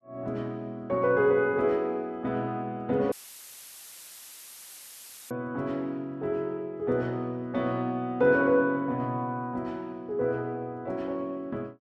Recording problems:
dropout; at 3 s for 2 s; filled with static

